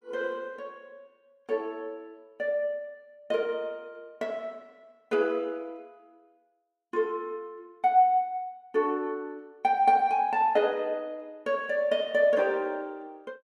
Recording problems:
none

